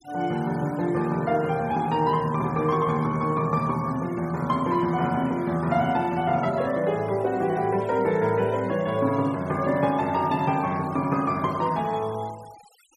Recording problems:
denoising artefacts; signal-to-artefact ratio 22 dB

